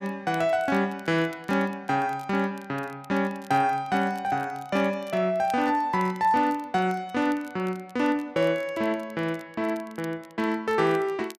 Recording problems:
crackle; vinyl, SNR 27 dB

